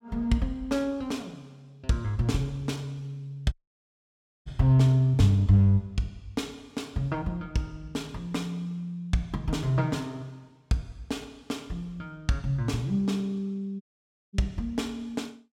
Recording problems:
audio cutting out; at 3.5 s for 1 s and at 14 s for 0.5 s

